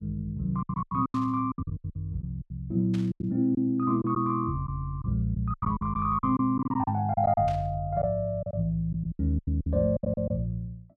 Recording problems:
packet loss; 14% of the sound replaced, filled with silence
static burst; at 1 s, at 3 s and at 7.5 s; peak -12 dB vs average level

